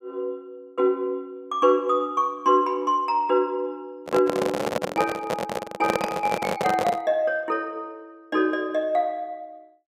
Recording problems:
handling noise; from 4 to 7 s; peak +4 dB vs average level

